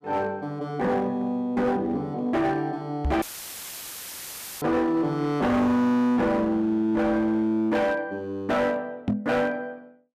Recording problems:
distortion; hard clipping, signal-to-distortion ratio 10 dB
microphone bump; at 3 s and at 9 s; peak +3 dB vs average level
audio cutting out; at 3 s for 1.5 s; filled with static

